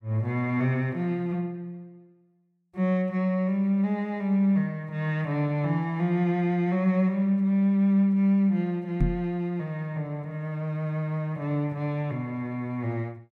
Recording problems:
microphone bump; at 9 s; peak +5 dB vs average level

